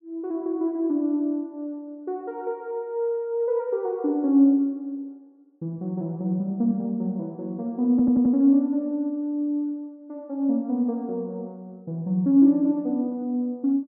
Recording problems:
stutter; at 8 s

